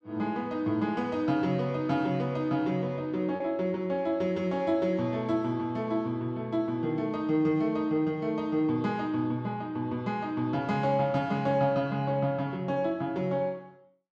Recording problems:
lost packets; 0.3% of the sound replaced, filled with repeated pitch periods

